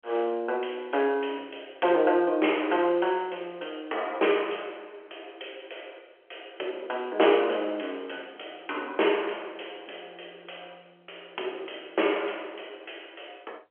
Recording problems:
phone line; 300 Hz to 3.3 kHz, G.711

